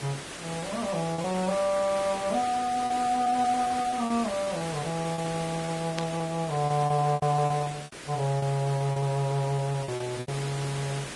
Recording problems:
lossy codec; Vorbis, log-spectral distance 7 dB
background hiss; slope -3 dB per octave, SNR 10 dB
packet loss; 11% of the sound replaced, filled with repeated pitch periods
burst of static; at 6 s; peak -1 dB vs average level

